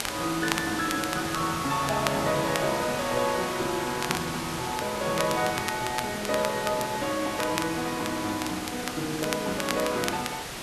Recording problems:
background hiss; slope -2 dB per octave, SNR 5 dB
crackle; vinyl, SNR 8 dB

